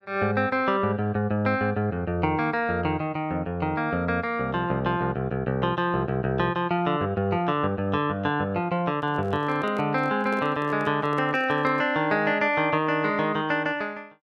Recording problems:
handling noise; from 9 to 12 s; peak -7 dB vs average level

